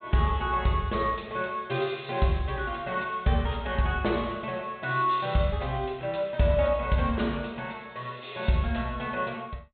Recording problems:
low-pass filter; nothing above 4 kHz

